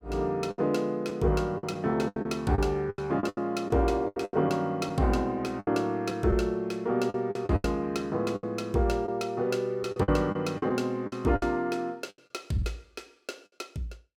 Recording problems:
lost packets; 11% of the sound replaced, filled with the last packet

